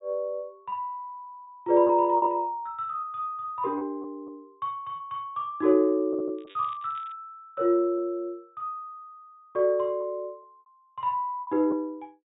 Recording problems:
low-pass filter; nothing above 4 kHz
lost packets; 5% of the sound replaced, filled with repeated pitch periods
crackle; at 6.5 s; loose cable, SNR 27 dB

